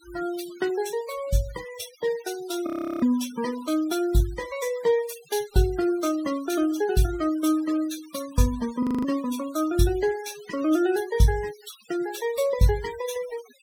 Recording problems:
noise reduction artefacts; signal-to-artefact ratio 17 dB
frozen audio; at 2.5 s and at 9 s

